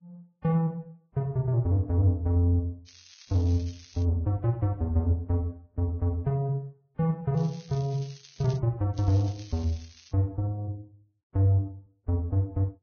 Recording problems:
codec artefacts; Vorbis, log-spectral distance 4 dB
crackle; from 3 to 4 s, from 7.5 to 8.5 s and from 9 to 10 s; loose cable, SNR 23 dB

